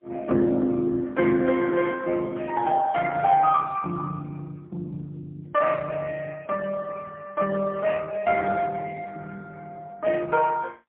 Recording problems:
phone line; 220 Hz to 3.2 kHz, AMR-NB, then MP3

